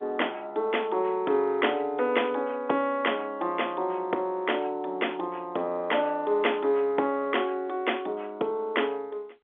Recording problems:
phone line; 300 Hz to 3.5 kHz, G.711

